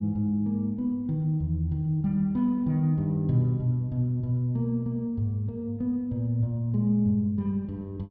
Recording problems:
none

